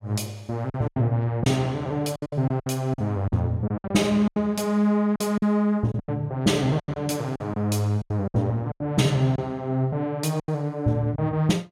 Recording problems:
lost packets; 11% of the sound replaced, filled with silence

